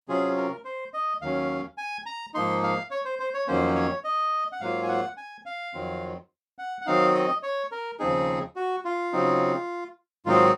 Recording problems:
none

